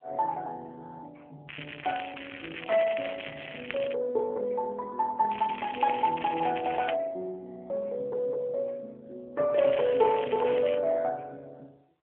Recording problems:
telephone audio; 300 Hz to 3.3 kHz, AMR-NB
crackling; from 1.5 to 4 s, from 5.5 to 7 s and from 9.5 to 11 s; loose cable, SNR 12 dB

